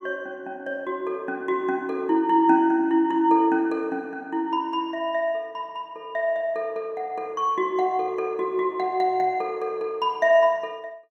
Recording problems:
none

